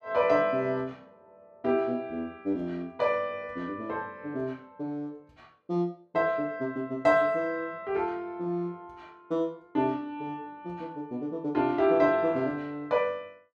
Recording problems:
none

